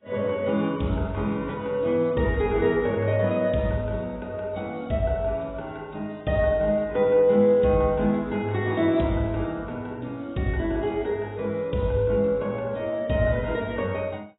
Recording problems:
lossy compression; AAC, log-spectral distance 2 dB, nothing above 3.8 kHz

